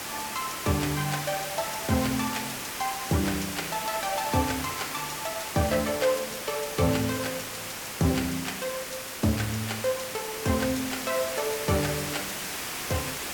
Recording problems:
background hiss; slope -1 dB per octave, SNR 4 dB

